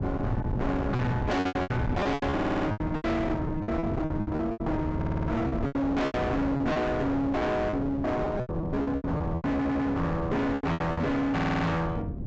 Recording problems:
treble missing; nothing above 8 kHz
distortion; hard clipping, signal-to-distortion ratio 6 dB
wind noise; below 300 Hz, SNR 5 dB
lost packets; 16% of the sound replaced, filled with repeated pitch periods
stutter; 4 times, first at 2.5 s

